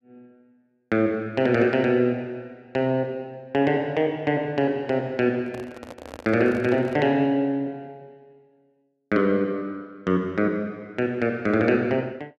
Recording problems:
microphone handling noise; from 5.5 to 7 s; peak -10 dB vs average level

